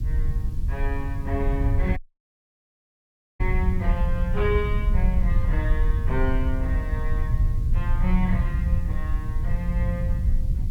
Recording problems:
background hiss; slope +3 dB per octave, SNR 25 dB
low-frequency rumble; below 78 Hz, SNR -5 dB
audio cutting out; at 2 s for 1.5 s

